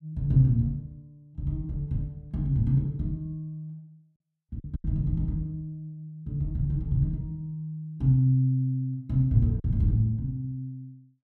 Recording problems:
lost packets; 1.6% of the sound replaced, filled with silence

